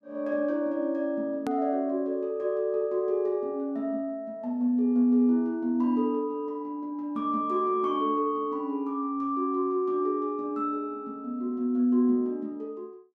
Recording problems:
edit click; at 1.5 s

